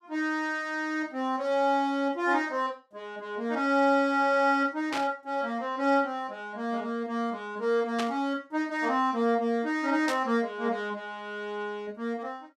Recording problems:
static burst; at 5 s, at 8 s and at 10 s; peak -1 dB vs average level

